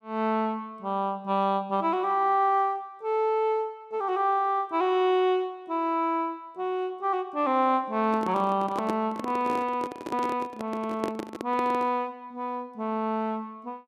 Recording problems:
handling noise; from 8 to 12 s; peak -1 dB vs average level

